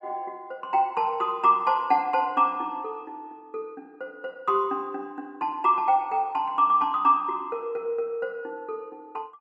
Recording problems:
none

